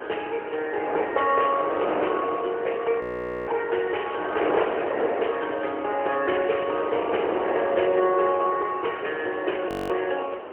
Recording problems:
phone line; 320 Hz to 3.1 kHz, AMR-NB, then MP3
background hiss; SNR 27 dB
wind on the microphone; below 850 Hz, SNR 5 dB
audio freezing; at 3 s and at 9.5 s

